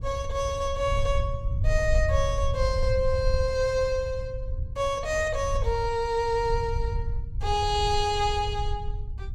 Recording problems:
low-frequency rumble; below 80 Hz, SNR 4 dB

